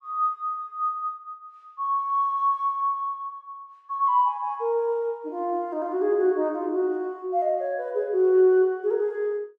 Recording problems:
none

